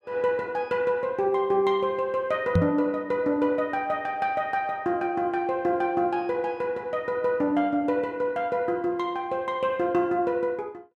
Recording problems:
microphone bump; at 2.5 s; peak +7 dB vs average level

